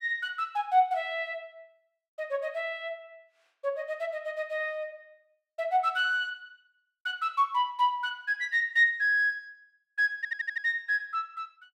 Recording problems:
stutter; at 10 s

